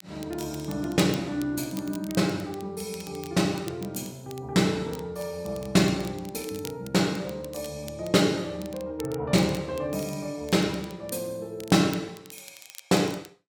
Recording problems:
crackle; vinyl, SNR 19 dB

